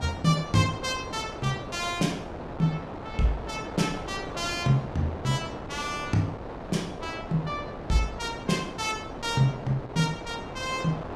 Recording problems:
wind on the microphone; below 870 Hz, SNR 9 dB

